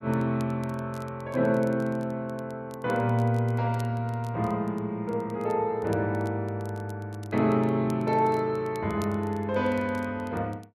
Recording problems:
crackling; vinyl, SNR 27 dB

